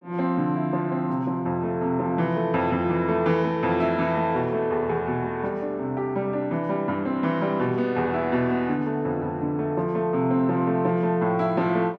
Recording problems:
none

